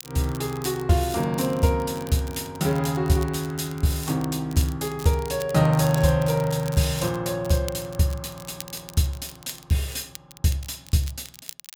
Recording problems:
crackle; vinyl, SNR 18 dB

